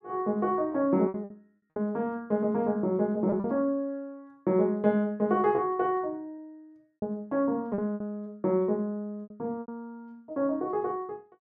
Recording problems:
lost packets; 6% of the sound replaced, filled with repeated pitch periods

